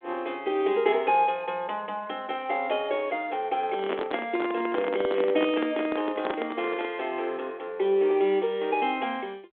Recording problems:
telephone audio; 280 Hz to 3.5 kHz, G.726
microphone handling noise; from 3.5 to 7 s; peak 0 dB vs average level

